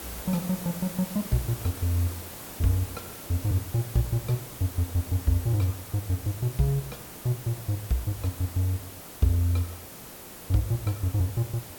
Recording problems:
hiss; slope -4 dB per octave, SNR 11 dB

